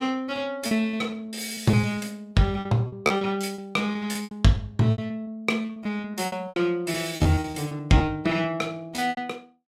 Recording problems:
packet loss; 16% of the sound replaced, filled with repeated pitch periods

